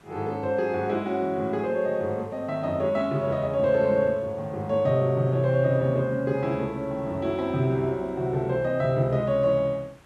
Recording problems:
background hiss; slope -5 dB per octave, SNR 29 dB

